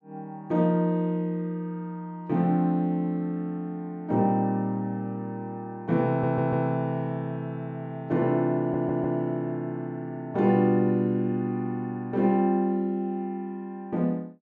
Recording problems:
stutter; at 6 s and at 8.5 s

